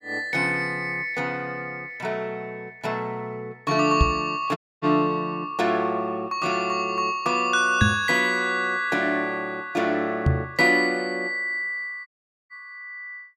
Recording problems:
microphone thump; at 4 s, at 8 s and at 10 s; peak +7 dB vs average level
audio cutting out; at 4.5 s and at 12 s

